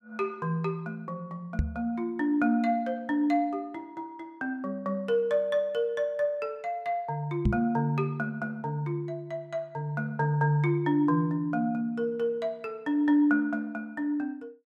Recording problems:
microphone bump; at 1.5 s and at 7.5 s; peak +6 dB vs average level

